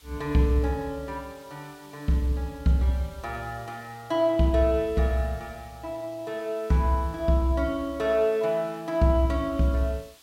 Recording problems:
hiss; slope +1 dB per octave, SNR 26 dB

